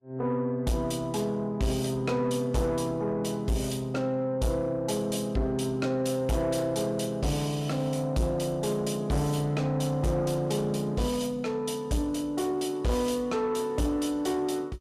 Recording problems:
lossy compression; Vorbis, log-spectral distance 2 dB, nothing above 12.7 kHz
distorted audio; soft clipping, signal-to-distortion ratio 11 dB

